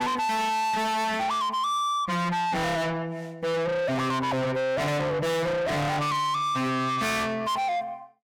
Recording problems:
distortion; soft clipping, signal-to-distortion ratio 6 dB

